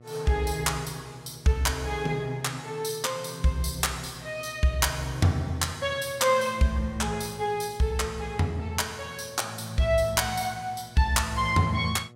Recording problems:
electrical hum; 60 Hz, harmonics up to 1.3 kHz, SNR 23 dB

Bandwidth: 16 kHz